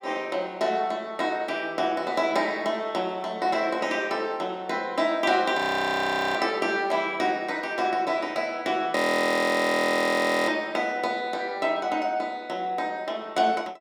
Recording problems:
frozen audio; at 5.5 s for 1 s and at 9 s for 1.5 s

